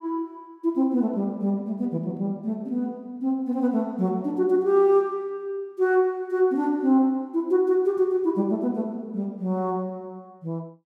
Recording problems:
none

